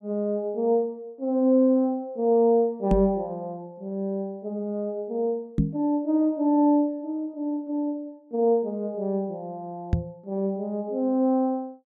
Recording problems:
knock on the microphone; at 3 s, at 5.5 s and at 10 s; peak +8 dB vs average level

